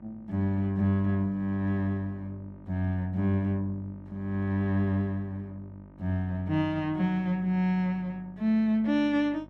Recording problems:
electrical hum; 50 Hz, harmonics up to 1.6 kHz, SNR 22 dB

